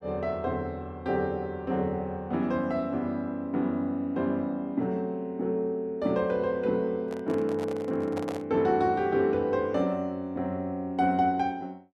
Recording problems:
microphone handling noise; from 7 to 8.5 s; peak -4 dB vs average level

